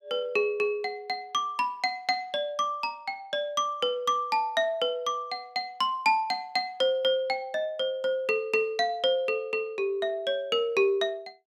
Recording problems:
none

